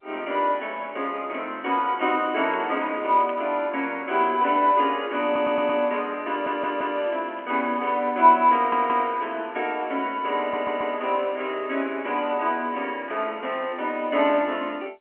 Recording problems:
phone line; 260 Hz to 3.2 kHz, G.711
crackle; from 2 to 3.5 s, at 7 s and at 8 s; loose cable, SNR 27 dB
audio stuttering; 4 times, first at 5.5 s

